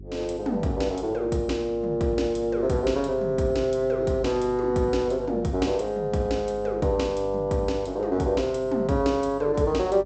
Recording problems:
treble missing; nothing above 8 kHz
hum; 50 Hz, harmonics up to 400 Hz, SNR 18 dB

